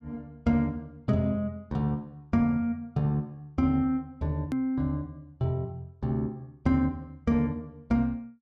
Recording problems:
click at an edit; at 4.5 s

